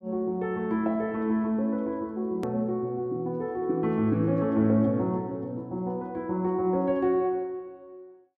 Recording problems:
hard cut with a click; at 2.5 s

